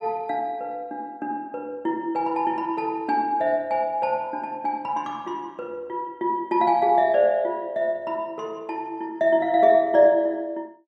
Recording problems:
none

